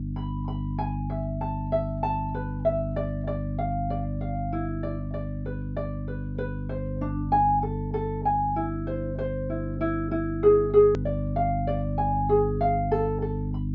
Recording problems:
low-pass filter; nothing above 7.2 kHz
electrical hum; 50 Hz, harmonics up to 300 Hz, SNR 4 dB
click at an edit; at 11 s

